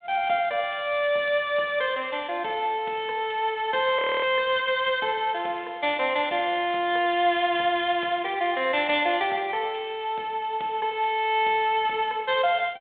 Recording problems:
phone line; 300 Hz to 3.8 kHz, G.726
audio freezing; at 4 s

